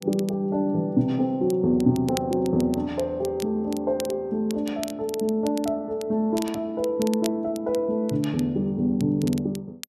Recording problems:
crackle; vinyl, SNR 17 dB

